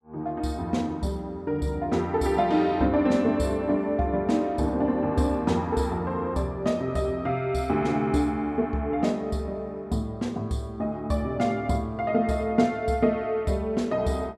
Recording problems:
none

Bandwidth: 14 kHz